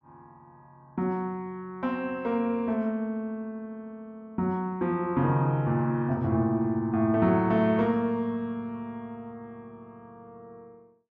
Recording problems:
none

